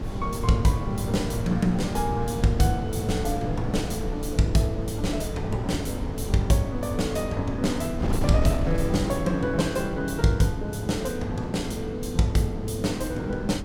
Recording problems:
hum; 50 Hz, harmonics up to 800 Hz, SNR 24 dB
wind noise; below 180 Hz, SNR 7 dB

